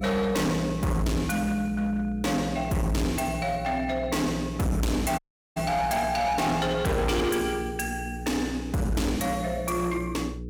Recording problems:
distorted audio; hard clipping, signal-to-distortion ratio 7 dB
electrical hum; 60 Hz, harmonics up to 480 Hz, SNR 11 dB
dropout; at 5 s

